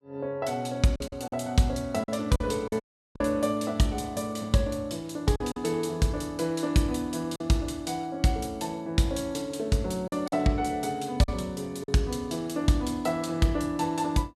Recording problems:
lost packets; 4% of the sound replaced, filled with silence
dropout; at 3 s

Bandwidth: 14.5 kHz